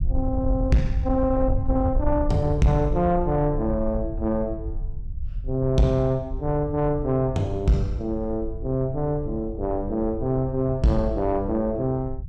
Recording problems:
distorted audio; soft clipping, signal-to-distortion ratio 12 dB
rumble; below 80 Hz, SNR 8 dB

